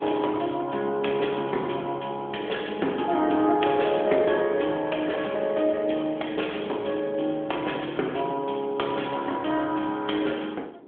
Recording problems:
phone line; 240 Hz to 3.4 kHz, AMR-NB
wind on the microphone; below 490 Hz, SNR 20 dB

